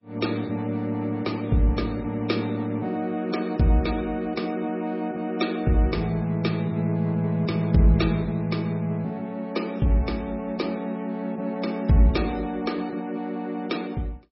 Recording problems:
lossy codec; MP3, log-spectral distance 2 dB, nothing above 5.5 kHz

